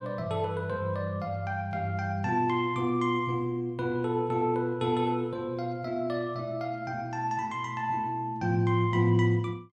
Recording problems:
none

